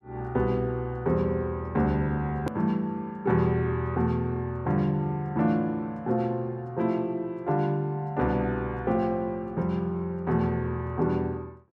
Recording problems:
hard cut with a click; at 2.5 s

